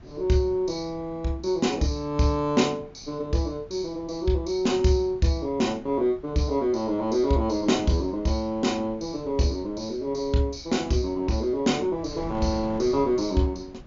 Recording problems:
treble missing; nothing above 7.3 kHz
wind noise; below 280 Hz, SNR 20 dB

